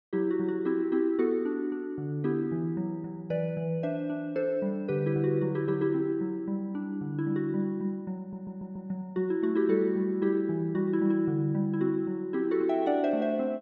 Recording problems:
audio stuttering; at 8 s

